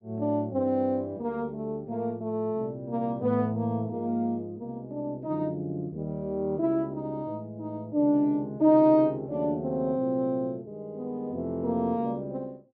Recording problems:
none

